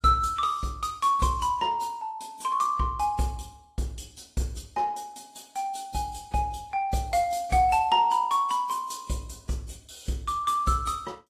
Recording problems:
codec artefacts; AAC, log-spectral distance 3 dB

